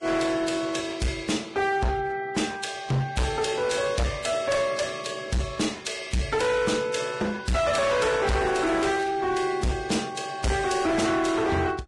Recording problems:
lossy compression; Vorbis, log-spectral distance 4 dB, nothing above 10.4 kHz
distortion; hard clipping, uneven, signal-to-distortion ratio 8 dB
crackling; at 8.5 s and at 11 s; loose cable, SNR 23 dB

